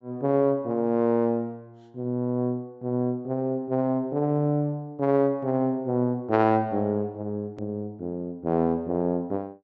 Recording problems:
low-pass filter; nothing above 7.9 kHz
edit click; at 7.5 s

